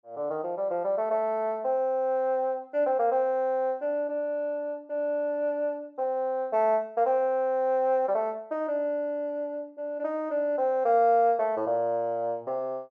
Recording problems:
none

